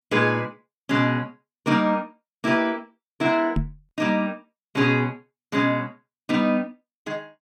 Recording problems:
microphone bump; at 3.5 s; peak +3 dB vs average level

